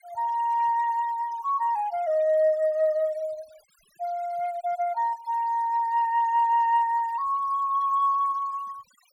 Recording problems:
noise reduction artefacts; signal-to-artefact ratio 26 dB

